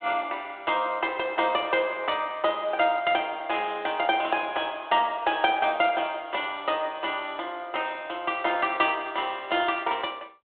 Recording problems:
phone line; 240 Hz to 3.6 kHz, G.726

